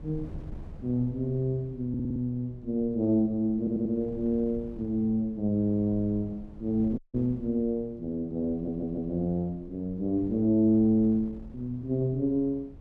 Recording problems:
wind on the microphone; below 160 Hz, SNR 19 dB
audio stuttering; at 2 s, at 3.5 s and at 8.5 s
dropout; at 7 s

